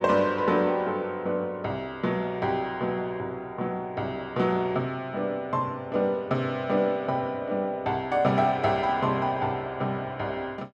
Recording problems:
none

